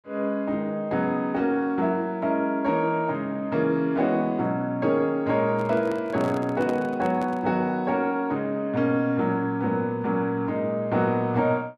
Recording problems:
microphone handling noise; from 5.5 to 7.5 s; peak -6 dB vs average level

